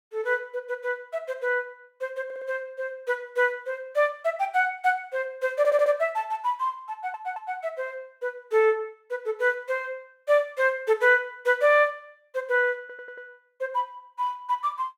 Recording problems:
audio stuttering; 4 times, first at 2.5 s

